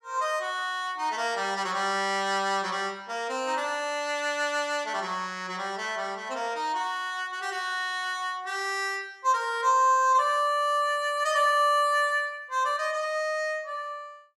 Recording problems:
none

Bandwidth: 14.5 kHz